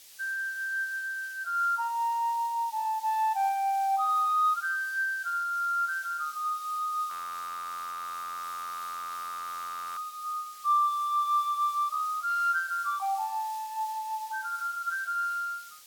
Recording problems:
background hiss; SNR 18 dB
audio freezing; at 7 s for 3 s

